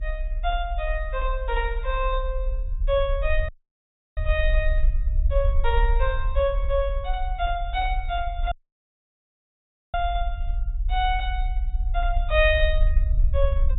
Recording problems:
treble missing; nothing above 4 kHz
rumble; below 52 Hz, strongest tone 32 Hz, SNR 0 dB
audio cutting out; at 3.5 s for 0.5 s and at 8.5 s for 1.5 s

